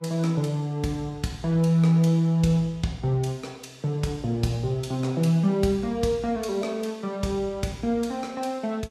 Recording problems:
codec artefacts; Vorbis, log-spectral distance 2 dB, nothing above 13.1 kHz

